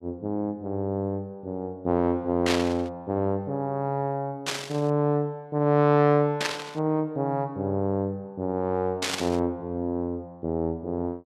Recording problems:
static burst; 4 times, first at 2.5 s; peak +4 dB vs average level

